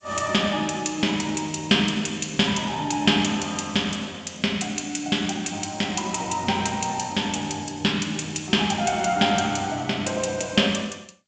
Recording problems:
lossy codec; G.722, log-spectral distance 5 dB, nothing above 7.3 kHz

